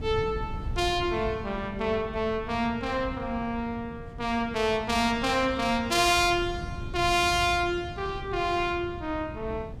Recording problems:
wind noise; below 150 Hz, SNR 12 dB

